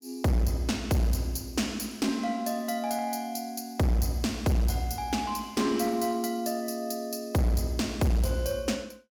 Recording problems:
distortion; hard clipping, uneven, signal-to-distortion ratio 10 dB

